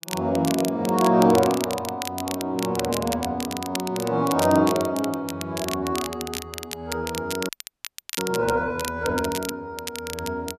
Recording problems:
crackling; vinyl, SNR 9 dB
audio freezing; at 7.5 s for 0.5 s

